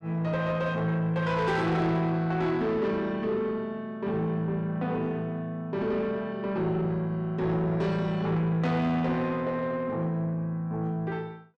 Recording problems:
distortion; soft clipping, signal-to-distortion ratio 11 dB

